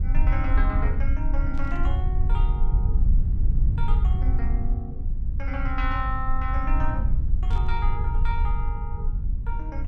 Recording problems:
low-frequency rumble; below 64 Hz, SNR -8 dB
static burst; at 1.5 s and at 7.5 s; peak -11 dB vs average level

